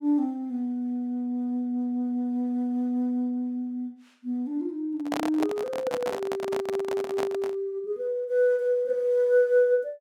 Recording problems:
handling noise; from 5 to 7.5 s; peak +1 dB vs average level

